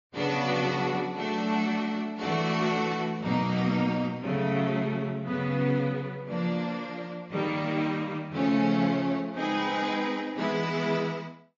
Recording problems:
lossy codec; MP3, then AAC, log-spectral distance 2 dB, nothing above 6.7 kHz

